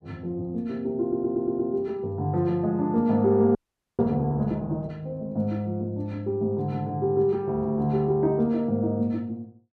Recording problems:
stutter; at 1 s
frozen audio; at 3.5 s

